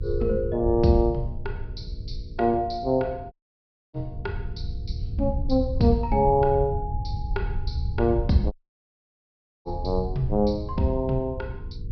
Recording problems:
low-pass filter; nothing above 5.5 kHz
hum; 60 Hz, harmonics up to 480 Hz, SNR 23 dB
low-frequency rumble; below 90 Hz, SNR 7 dB
audio cutting out; at 3.5 s for 0.5 s and at 8.5 s for 1 s

